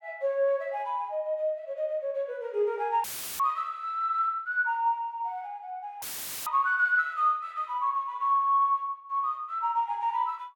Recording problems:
dropout; at 3 s and at 6 s; filled with static

